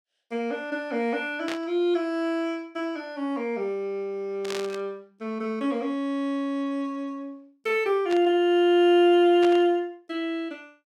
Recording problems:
burst of static; 4 times, first at 1.5 s; peak -5 dB vs average level

